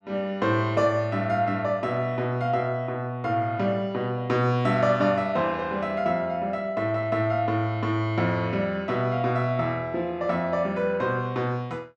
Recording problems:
none

